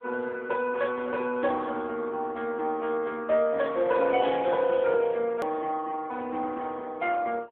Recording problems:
phone line; 260 Hz to 3.4 kHz, AMR-NB
click at an edit; at 5.5 s

